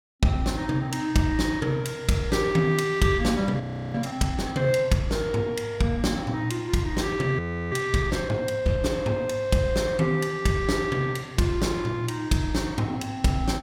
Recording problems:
audio freezing; at 3.5 s and at 7.5 s

